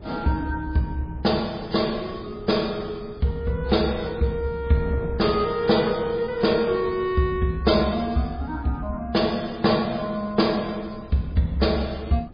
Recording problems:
codec artefacts; MP3, log-spectral distance 4 dB
wind on the microphone; below 260 Hz, SNR 17 dB

